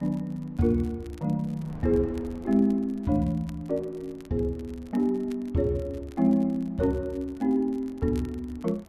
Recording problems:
wind on the microphone; below 440 Hz, SNR 23 dB
crackle; vinyl, SNR 29 dB

